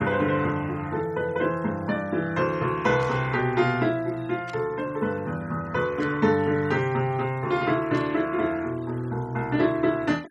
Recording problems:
noise reduction artefacts; signal-to-artefact ratio 25 dB
static burst; 4 times, first at 3 s; peak -14 dB vs average level

